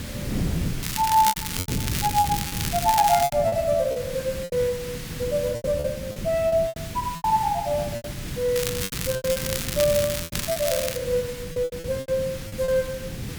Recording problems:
hiss; slope +1 dB per octave, SNR 13 dB
wind on the microphone; below 220 Hz, SNR 9 dB
packet loss; 14% of the sound replaced, filled with repeated pitch periods
crackle; from 1 to 3.5 s and from 8.5 to 11 s; loose cable, SNR 4 dB

